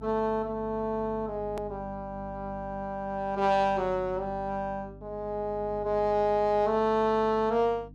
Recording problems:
hum; 50 Hz, harmonics up to 300 Hz, SNR 18 dB
edit click; at 1.5 s

